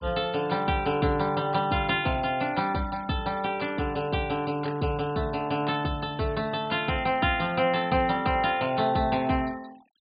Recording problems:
low-pass filter; nothing above 4.8 kHz
denoising artefacts; signal-to-artefact ratio 23 dB

